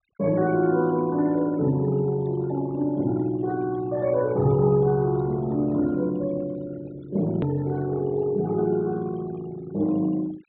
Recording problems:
low-pass filter; nothing above 4 kHz
denoising artefacts; signal-to-artefact ratio 22 dB
click at an edit; at 7.5 s

